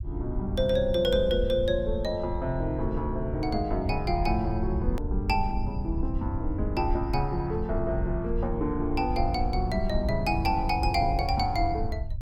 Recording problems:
low-frequency rumble; below 80 Hz, SNR 5 dB
hard cut with a click; at 5 s

